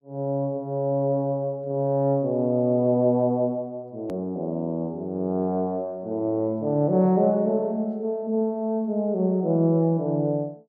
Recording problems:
click at an edit; at 4 s

